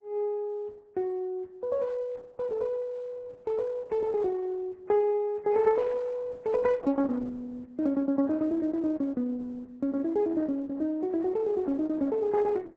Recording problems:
codec artefacts; MP3, then Opus, log-spectral distance 2 dB, nothing above 7.6 kHz

